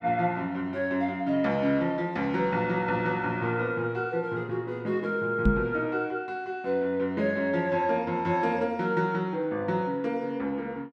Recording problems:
microphone thump; at 5.5 s; peak +8 dB vs average level

